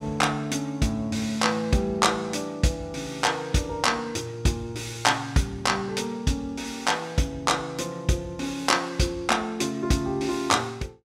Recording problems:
none

